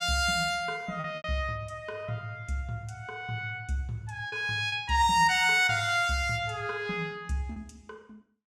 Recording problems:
lost packets; 3% of the sound replaced, filled with repeated pitch periods

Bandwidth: 15 kHz